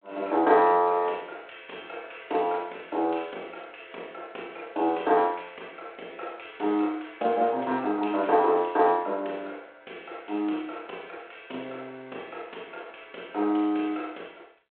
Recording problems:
phone line; 300 Hz to 3.7 kHz, G.726

